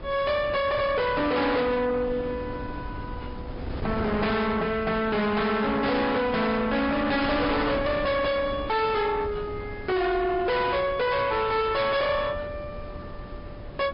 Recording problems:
treble missing; nothing above 5.2 kHz
lossy codec; MP3, then MP3, log-spectral distance 2 dB
distorted audio; soft clipping, signal-to-distortion ratio 6 dB
wind noise; below 610 Hz, SNR 12 dB

